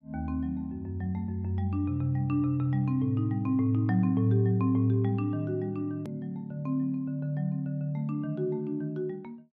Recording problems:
edit click; at 6 s

